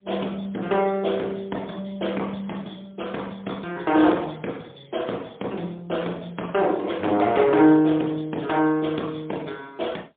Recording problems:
phone line; 220 Hz to 3.6 kHz, AMR-NB, then MP3
distorted audio; hard clipping, uneven, signal-to-distortion ratio 14 dB

